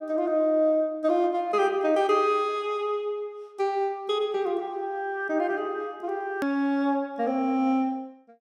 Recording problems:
click at an edit; at 6.5 s

